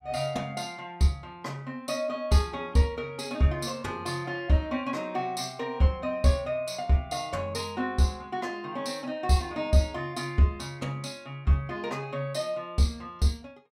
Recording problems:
none

